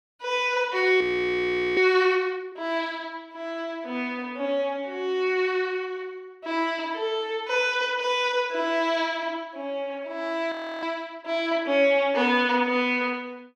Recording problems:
audio freezing; at 1 s for 1 s and at 11 s

